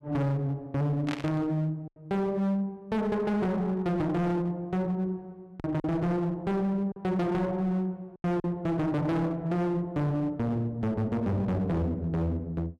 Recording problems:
distorted audio; hard clipping, signal-to-distortion ratio 8 dB
packet loss; 2% of the sound replaced, filled with silence
burst of static; at 1 s; peak -4 dB vs average level

